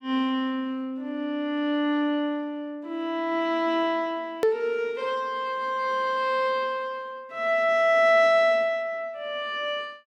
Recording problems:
click at an edit; at 4.5 s

